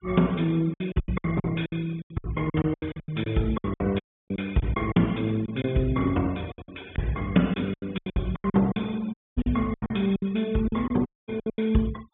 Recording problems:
treble cut off; nothing above 3.5 kHz
noise reduction artefacts; signal-to-artefact ratio 24 dB
packet loss; 17% of the sound replaced, filled with silence
dropout; at 4 s, at 9 s and at 11 s

